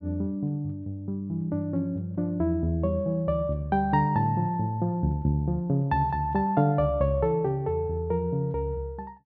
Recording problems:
none

